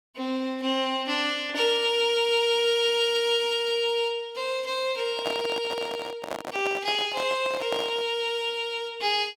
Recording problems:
handling noise; from 5 to 8 s; peak -2 dB vs average level

